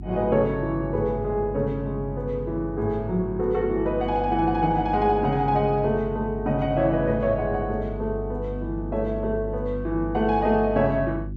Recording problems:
hum; 50 Hz, harmonics up to 350 Hz, SNR 10 dB

